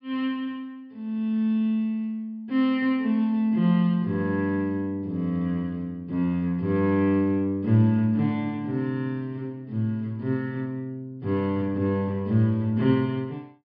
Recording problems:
treble cut off; nothing above 5.5 kHz

